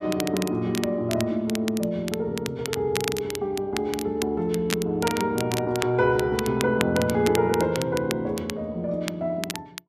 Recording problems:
crackle; vinyl, SNR 9 dB

